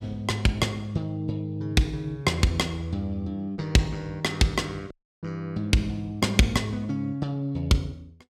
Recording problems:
dropout; at 5 s

